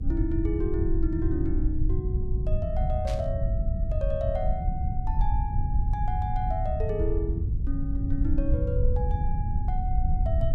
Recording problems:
hum; 50 Hz, harmonics up to 400 Hz, SNR 14 dB
low-frequency rumble; below 86 Hz, SNR -5 dB
burst of static; at 3 s; peak -4 dB vs average level

